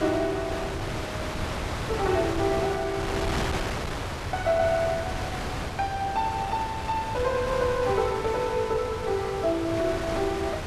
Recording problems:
wind on the microphone; below 1.6 kHz, SNR 4 dB

